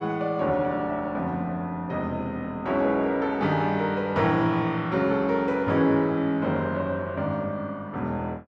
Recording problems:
none

